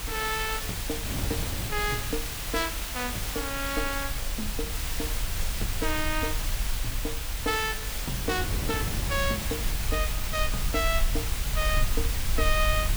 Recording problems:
hiss; slope 0 dB per octave, SNR 1 dB
low-frequency rumble; below 54 Hz, SNR 3 dB
wind noise; below 210 Hz, SNR 9 dB

